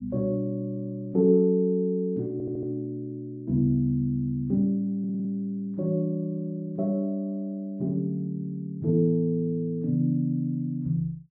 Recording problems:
stutter; at 2.5 s and at 5 s

